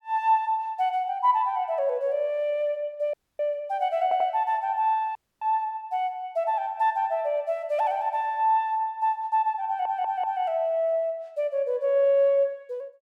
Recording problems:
dropout; at 3 s and at 5 s
stutter; at 4 s and at 9.5 s

